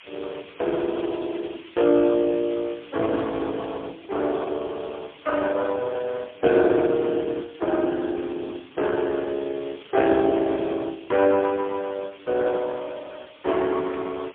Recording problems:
phone line; 260 Hz to 3.4 kHz, AMR-NB, then MP3
background hiss; SNR 22 dB

